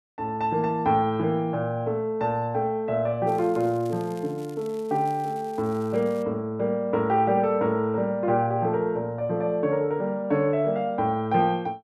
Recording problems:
crackle; from 3.5 to 6 s; loose cable, SNR 27 dB

